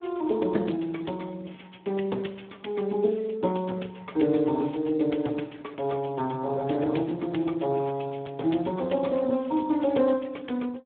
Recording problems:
telephone audio; 190 Hz to 3.5 kHz, Speex

